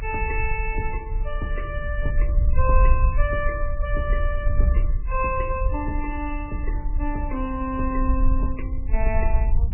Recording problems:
lossy compression; MP3, log-spectral distance 2 dB, nothing above 2.4 kHz
low-frequency rumble; below 58 Hz, SNR -3 dB

